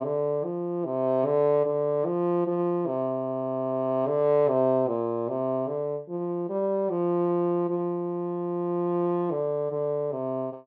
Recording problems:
none

